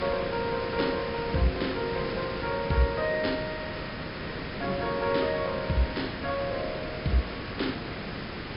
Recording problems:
treble cut off; nothing above 5.5 kHz
background hiss; slope -4 dB per octave, SNR 5 dB

